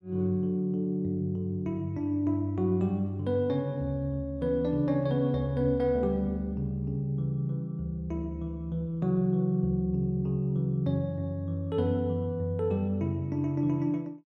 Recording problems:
none

